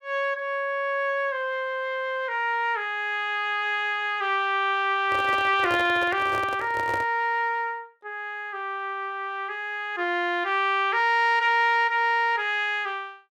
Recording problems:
microphone handling noise; from 5 to 7 s; peak -4 dB vs average level

